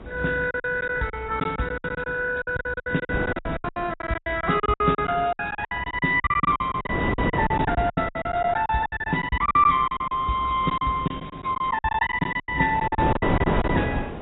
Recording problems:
lossy compression; MP2, then AAC, log-spectral distance 4 dB, nothing above 3.8 kHz
wind on the microphone; below 650 Hz, SNR 7 dB
lost packets; 21% of the sound replaced, filled with silence

